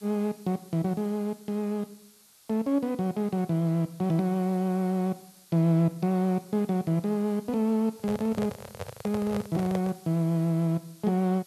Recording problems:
hiss; slope +1 dB per octave, SNR 25 dB
handling noise; from 8 to 10 s; peak -3 dB vs average level

